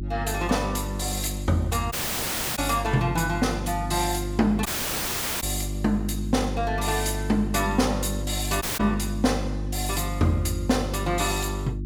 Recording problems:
hum; 50 Hz, harmonics up to 350 Hz, SNR 6 dB
dropout; at 2 s for 0.5 s, at 4.5 s for 1 s and at 8.5 s

